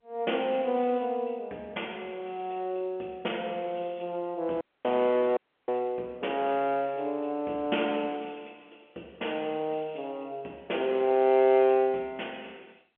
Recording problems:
telephone audio; 220 Hz to 3.3 kHz, G.711
dropout; at 4.5 s and at 5.5 s

